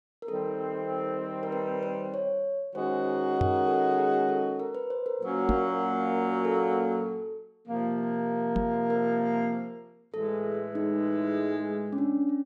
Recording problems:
knock on the microphone; at 3.5 s, at 5.5 s and at 8.5 s; peak +4 dB vs average level

